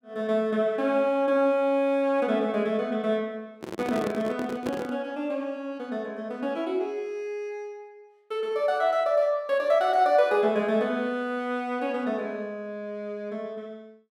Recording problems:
handling noise; from 3.5 to 5 s; peak -3 dB vs average level

